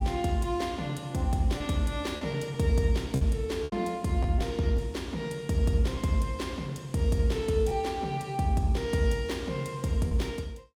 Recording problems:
lost packets; 3% of the sound replaced, filled with repeated pitch periods

